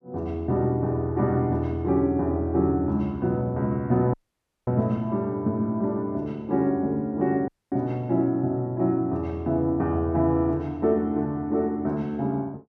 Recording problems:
dropout; at 4 s for 0.5 s and at 7.5 s

